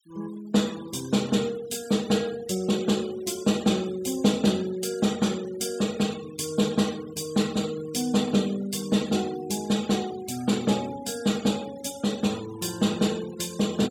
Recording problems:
noise reduction artefacts; signal-to-artefact ratio 17 dB

